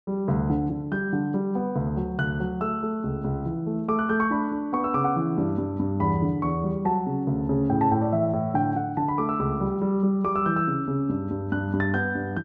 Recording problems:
none

